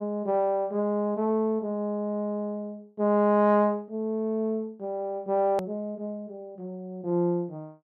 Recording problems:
hard cut with a click; at 5.5 s

